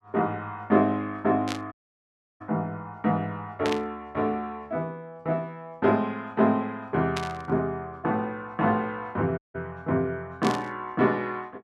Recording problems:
burst of static; 4 times, first at 1.5 s; peak 0 dB vs average level
audio cutting out; at 1.5 s for 0.5 s and at 9.5 s

